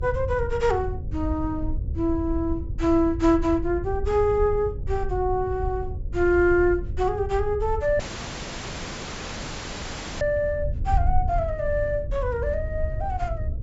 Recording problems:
low-pass filter; nothing above 8 kHz
hum; 50 Hz, harmonics up to 550 Hz, SNR 23 dB
wind on the microphone; below 84 Hz, SNR 7 dB
dropout; at 8 s for 2 s

